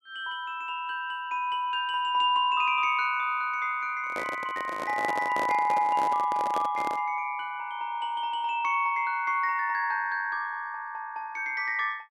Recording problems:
microphone handling noise; from 4 to 7 s; peak -2 dB vs average level

